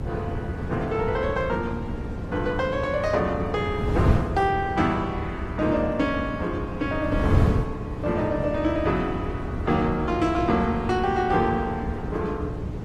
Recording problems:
codec artefacts; Opus, log-spectral distance 2 dB, nothing above 14.1 kHz
hum; 60 Hz, harmonics up to 480 Hz, SNR 14 dB
wind noise; below 240 Hz, SNR 4 dB

